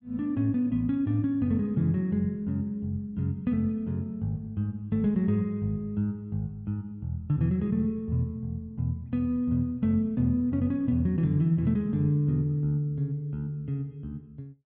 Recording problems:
none

